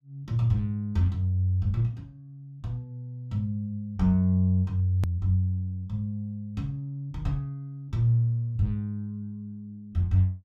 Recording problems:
hard cut with a click; at 5 s

